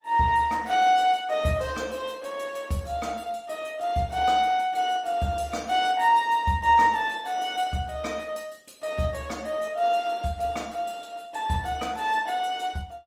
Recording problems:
lossy codec; Opus, then Opus, log-spectral distance 3 dB

